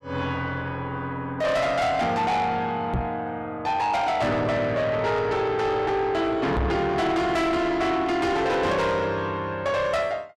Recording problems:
distortion; soft clipping, signal-to-distortion ratio 8 dB
microphone bump; at 3 s and at 6.5 s; peak +3 dB vs average level

